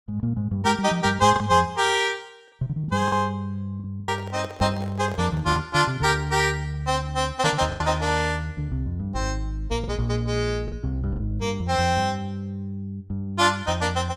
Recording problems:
lost packets; 3% of the sound replaced, filled with the last packet
handling noise; from 4 to 5.5 s; peak -8 dB vs average level

